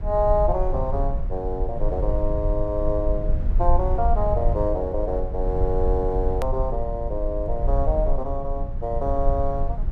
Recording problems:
rumble; below 58 Hz, SNR 1 dB
hard cut with a click; at 6.5 s

